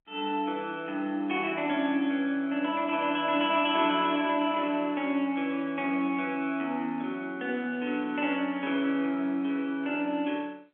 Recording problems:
telephone audio; 220 Hz to 3.5 kHz, G.711

